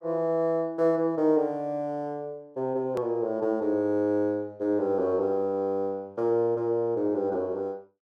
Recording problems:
edit click; at 3 s

